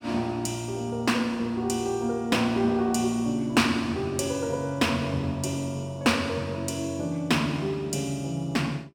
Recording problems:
none

